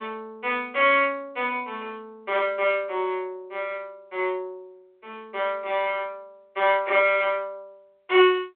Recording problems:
telephone audio; 300 Hz to 3.6 kHz, G.726

